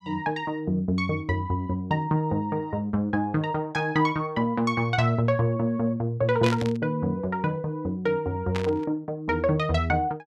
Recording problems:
static burst; at 6.5 s and at 8.5 s; peak -2 dB vs average level

